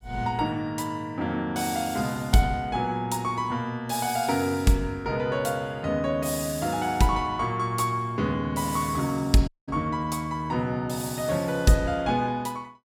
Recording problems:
dropout; at 9.5 s

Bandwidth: 18 kHz